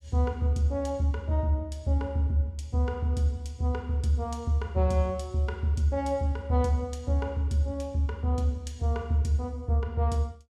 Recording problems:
none

